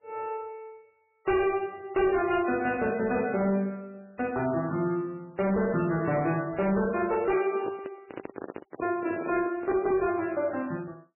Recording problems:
lossy compression; MP3, log-spectral distance 3 dB, nothing above 2.5 kHz
distorted audio; hard clipping, signal-to-distortion ratio 11 dB
microphone handling noise; from 7.5 to 10 s; peak -2 dB vs average level

